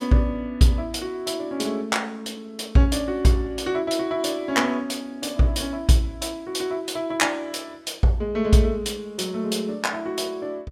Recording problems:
none

